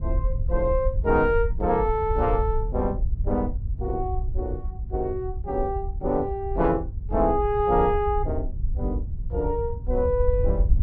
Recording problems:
wind noise; below 72 Hz, SNR 4 dB

